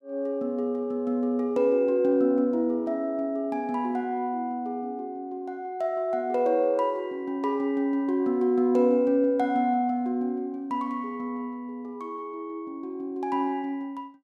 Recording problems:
none

